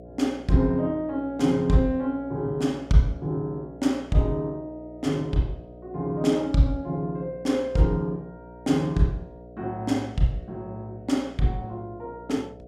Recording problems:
hum; 60 Hz, harmonics up to 720 Hz, SNR 19 dB

